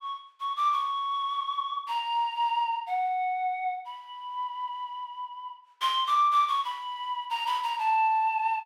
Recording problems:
none

